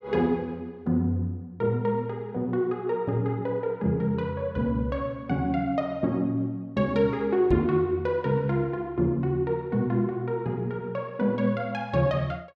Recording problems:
microphone bump; at 7.5 s; peak +1 dB vs average level

